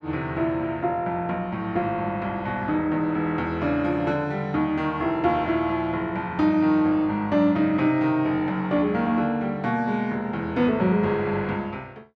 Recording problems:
none

